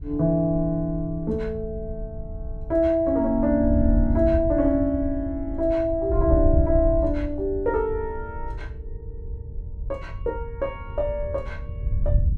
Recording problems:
wind noise; below 84 Hz, SNR 6 dB

